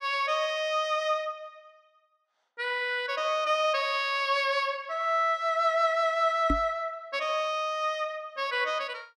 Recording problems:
microphone bump; at 6.5 s; peak +3 dB vs average level

